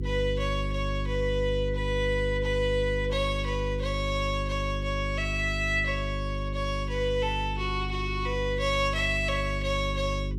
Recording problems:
hum; 50 Hz, harmonics up to 400 Hz, SNR 4 dB

